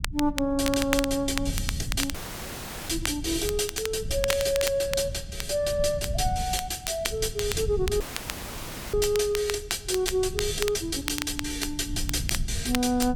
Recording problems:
low-frequency rumble; below 110 Hz, SNR 10 dB
crackle; vinyl, SNR 8 dB
dropout; at 2 s for 1 s and at 8 s for 1 s

